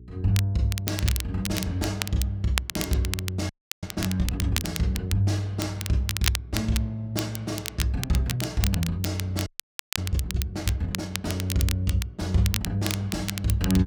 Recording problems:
hum; 60 Hz, harmonics up to 420 Hz, SNR 20 dB
crackle; vinyl, SNR 6 dB
audio freezing; at 3.5 s and at 9.5 s for 0.5 s

